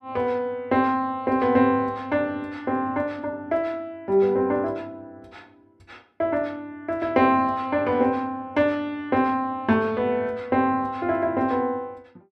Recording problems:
none

